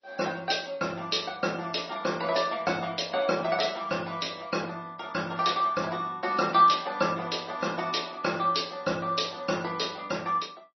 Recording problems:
lossy compression; MP3, log-spectral distance 6 dB, nothing above 5.8 kHz

